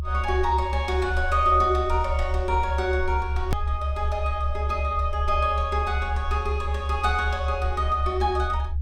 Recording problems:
rumble; below 74 Hz, strongest tone 72 Hz, SNR 3 dB
click at an edit; at 3.5 s

